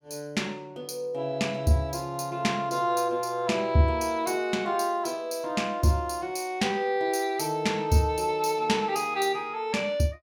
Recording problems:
none

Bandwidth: 18.5 kHz